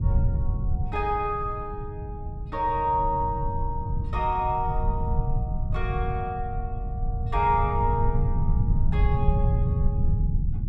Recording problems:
low-frequency rumble; below 120 Hz, SNR 0 dB

